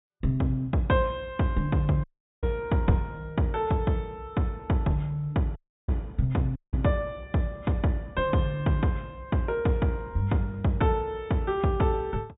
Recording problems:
treble cut off; nothing above 4 kHz
dropout; at 2 s, at 5.5 s and at 6.5 s

